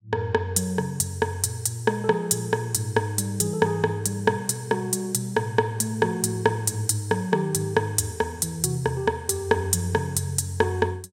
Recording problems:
none

